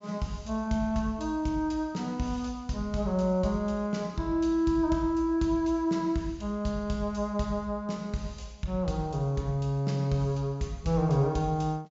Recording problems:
low-pass filter; nothing above 8 kHz

